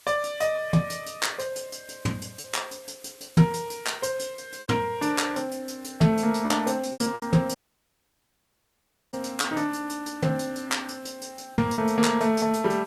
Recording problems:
lossy compression; Vorbis, log-spectral distance 6 dB, nothing above 13.1 kHz
hiss; slope +2 dB per octave, SNR 25 dB
packet loss; 5% of the sound replaced, filled with repeated pitch periods
dropout; at 7.5 s for 1.5 s

